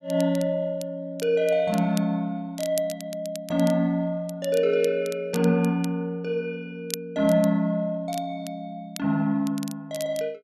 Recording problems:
crackle; vinyl, SNR 16 dB

